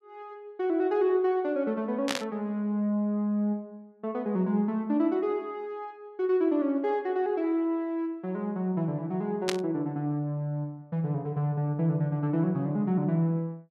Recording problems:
static burst; at 2 s and at 9.5 s; peak +3 dB vs average level

